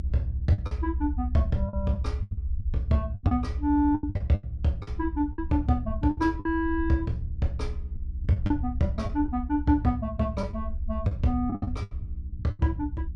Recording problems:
hum; 60 Hz, harmonics up to 360 Hz, SNR 23 dB
low-frequency rumble; below 74 Hz, SNR 6 dB
lost packets; 10% of the sound replaced, filled with the last packet

